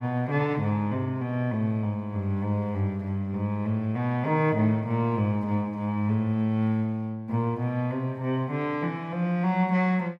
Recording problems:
none

